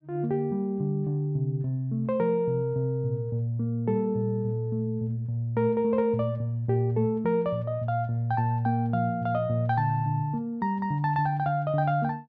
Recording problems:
none

